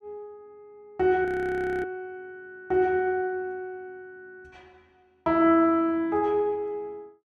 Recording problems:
frozen audio; at 1.5 s for 0.5 s

